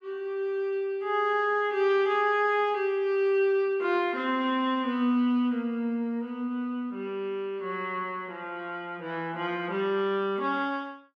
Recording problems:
none

